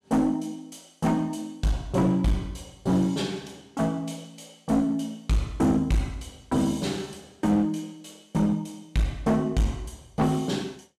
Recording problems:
distortion; hard clipping, uneven, signal-to-distortion ratio 10 dB

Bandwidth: 14.5 kHz